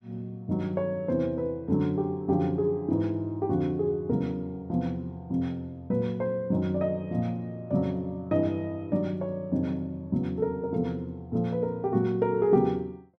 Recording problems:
none

